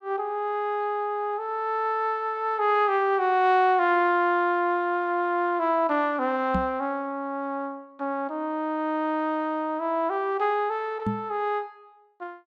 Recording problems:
microphone thump; at 6.5 s and at 11 s; peak +1 dB vs average level

